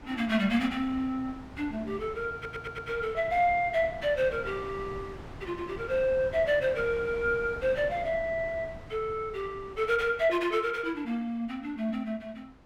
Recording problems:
wind noise; below 730 Hz, SNR 16 dB
stutter; at 2.5 s

